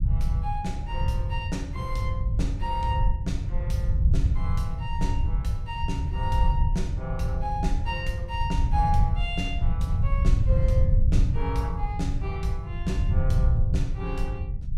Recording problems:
rumble; below 90 Hz, SNR -5 dB

